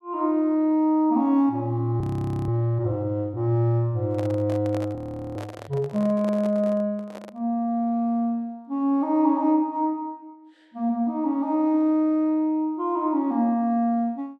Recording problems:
audio freezing; at 2 s and at 5 s
microphone handling noise; from 4 to 7.5 s; peak -9 dB vs average level

